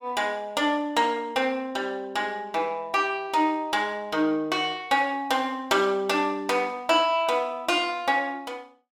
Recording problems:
none

